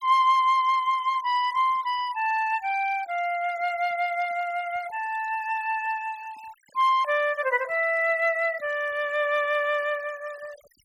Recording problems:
denoising artefacts; signal-to-artefact ratio 23 dB

